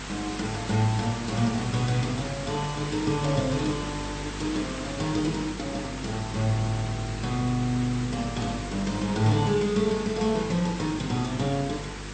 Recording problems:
lossy codec; MP2, then MP3, log-spectral distance 7 dB, nothing above 8.2 kHz
hum; 50 Hz, harmonics up to 500 Hz, SNR 11 dB
background hiss; slope -2 dB per octave, SNR 10 dB

